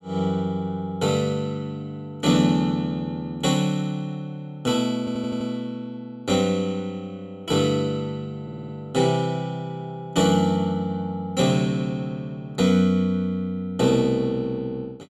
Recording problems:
stutter; at 5 s and at 8.5 s

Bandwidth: 14 kHz